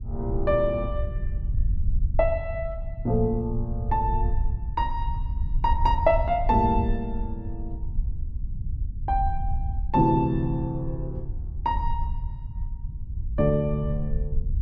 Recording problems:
rumble; below 72 Hz, SNR 4 dB

